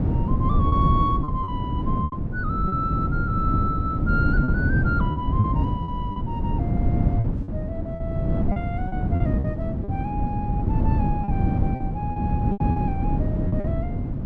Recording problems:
wind on the microphone; below 210 Hz, SNR -6 dB
packet loss; 7% of the sound replaced, filled with repeated pitch periods

